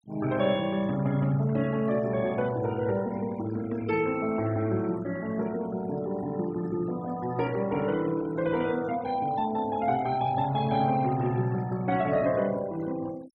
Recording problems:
denoising artefacts; signal-to-artefact ratio 18 dB

